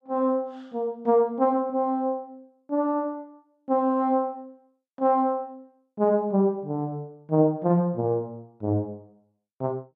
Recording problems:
none

